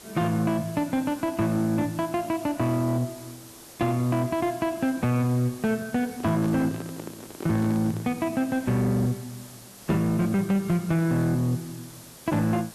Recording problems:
distortion; soft clipping, signal-to-distortion ratio 12 dB
hiss; SNR 19 dB
microphone handling noise; from 6 to 8 s; peak -7 dB vs average level

